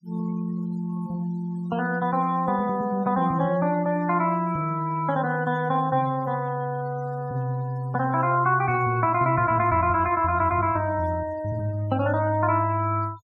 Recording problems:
denoising artefacts; signal-to-artefact ratio 23 dB

